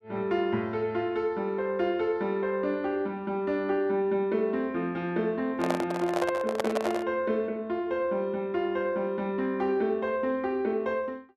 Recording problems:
microphone handling noise; from 5.5 to 7 s; peak +3 dB vs average level

